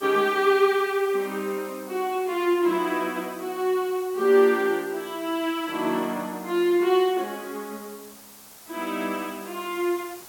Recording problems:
background hiss; SNR 20 dB

